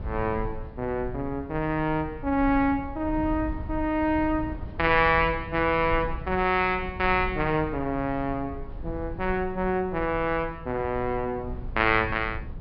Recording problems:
treble cut off; nothing above 5.5 kHz
low-frequency rumble; below 100 Hz, SNR 12 dB

